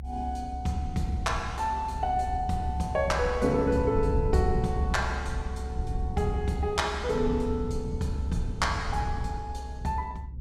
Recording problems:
rumble; below 100 Hz, SNR 4 dB

